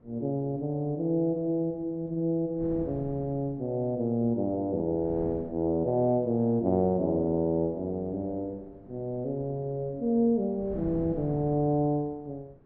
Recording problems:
wind noise; below 300 Hz, SNR 19 dB

